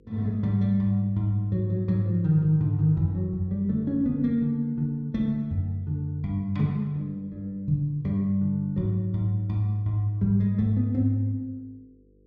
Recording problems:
hum; 50 Hz, harmonics up to 500 Hz, SNR 33 dB

